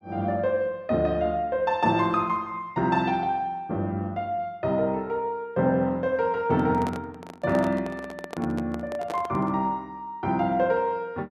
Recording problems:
microphone handling noise; from 6.5 to 9.5 s; peak -4 dB vs average level

